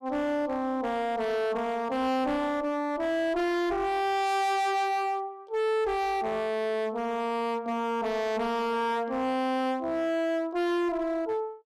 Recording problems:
distorted audio; hard clipping, signal-to-distortion ratio 5 dB

